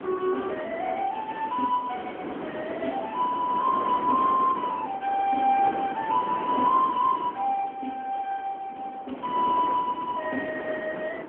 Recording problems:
telephone audio; 220 Hz to 3.5 kHz, AMR-NB
wind on the microphone; below 930 Hz, SNR 9 dB
crackling; from 1 to 3 s; loose cable, SNR 27 dB

